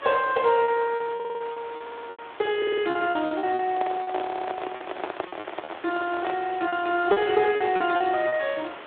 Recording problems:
telephone audio; 86 Hz to 3.6 kHz, Speex
hiss; SNR 16 dB
lost packets; 11% of the sound replaced, filled with repeated pitch periods
audio stuttering; 4 times, first at 1 s
microphone handling noise; from 3.5 to 6.5 s; peak -1 dB vs average level

